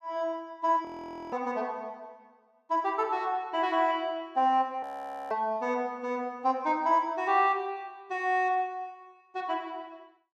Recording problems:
frozen audio; at 1 s and at 5 s

